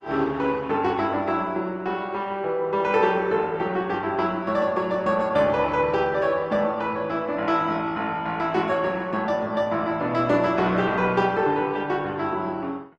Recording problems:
codec artefacts; Opus, log-spectral distance 2 dB

